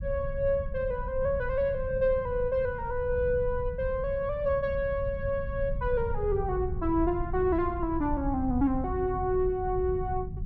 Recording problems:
rumble; below 98 Hz, SNR 8 dB

